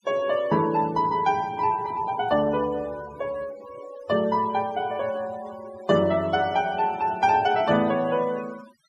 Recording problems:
noise reduction artefacts; signal-to-artefact ratio 20 dB

